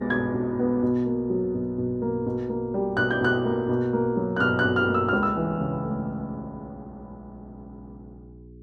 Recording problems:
electrical hum; 60 Hz, harmonics up to 420 Hz, SNR 23 dB

